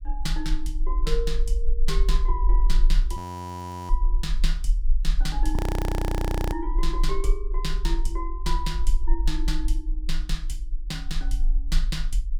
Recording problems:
low-frequency rumble; below 40 Hz, strongest tone 28 Hz, SNR -5 dB
frozen audio; at 3 s for 0.5 s and at 5.5 s for 1 s

